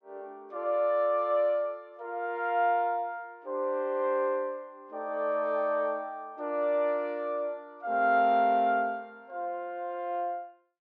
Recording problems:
none

